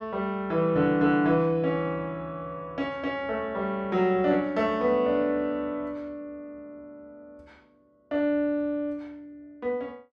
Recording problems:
none

